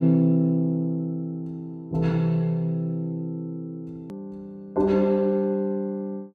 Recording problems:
click at an edit; at 4 s

